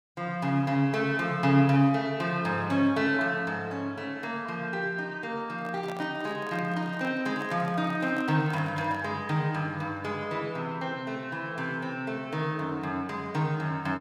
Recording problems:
microphone handling noise; from 5.5 to 9 s; peak -7 dB vs average level

